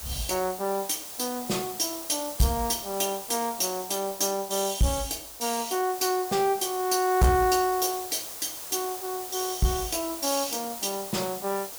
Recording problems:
distorted audio; soft clipping, signal-to-distortion ratio 12 dB
background hiss; SNR 9 dB

